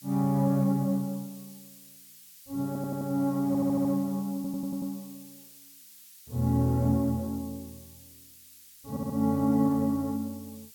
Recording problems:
background hiss; SNR 20 dB
stutter; 4 times, first at 2.5 s

